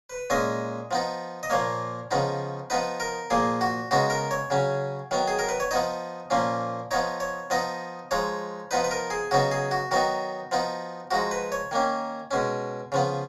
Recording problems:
none

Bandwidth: 15.5 kHz